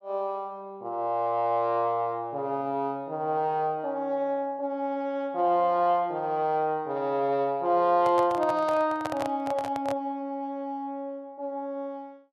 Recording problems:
handling noise; from 8 to 10 s; peak -2 dB vs average level

